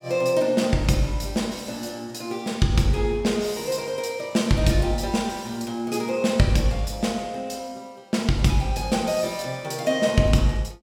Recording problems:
none

